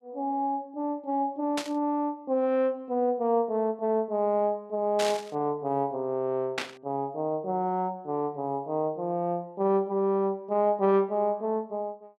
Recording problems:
static burst; at 1.5 s, at 5 s and at 6.5 s; peak +2 dB vs average level

